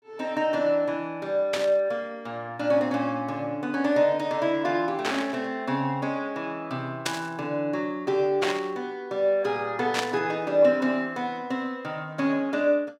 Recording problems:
static burst; 5 times, first at 1.5 s; peak +3 dB vs average level

